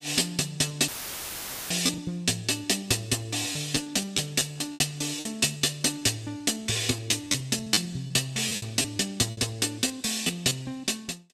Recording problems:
packet loss; 10% of the sound replaced, filled with repeated pitch periods
audio cutting out; at 1 s for 1 s; filled with static

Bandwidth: 15 kHz